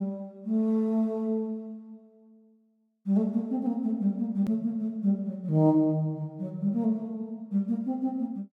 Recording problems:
edit click; at 4.5 s

